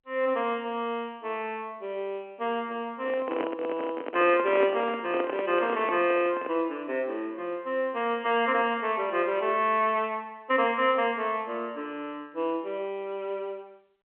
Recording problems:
phone line; 240 Hz to 3.2 kHz, G.711
microphone handling noise; from 3 to 6.5 s; peak 0 dB vs average level

